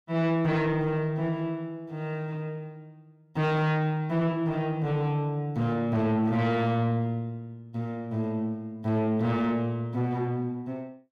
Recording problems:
distortion; soft clipping, signal-to-distortion ratio 10 dB

